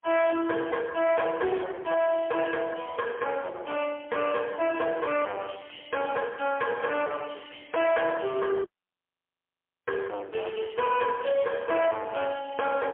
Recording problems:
telephone audio; 300 Hz to 3.3 kHz, AMR-NB, then MP3
distortion; hard clipping, uneven, signal-to-distortion ratio 4 dB
audio cutting out; at 8.5 s for 1 s

